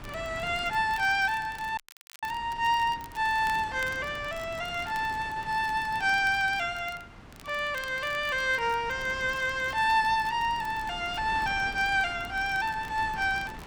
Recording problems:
wind on the microphone; below 1.2 kHz, SNR 17 dB
crackling; vinyl, SNR 24 dB
audio cutting out; at 2 s

